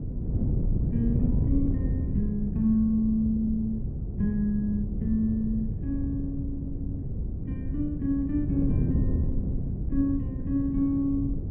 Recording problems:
wind on the microphone; below 160 Hz, SNR 2 dB

